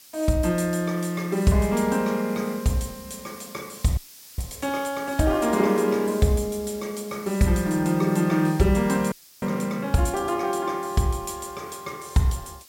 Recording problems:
hiss; SNR 20 dB
audio freezing; at 4 s and at 9 s

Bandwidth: 16.5 kHz